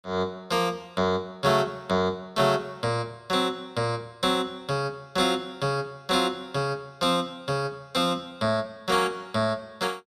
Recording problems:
none

